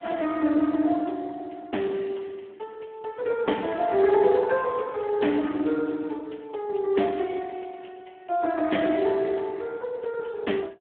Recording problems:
phone line; 240 Hz to 3.3 kHz, Speex

